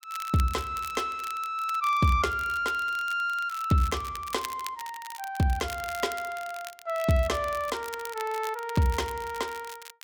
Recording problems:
crackling; vinyl, SNR 15 dB

